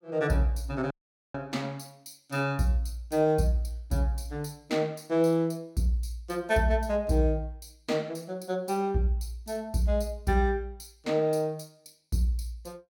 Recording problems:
audio cutting out; at 1 s

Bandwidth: 17 kHz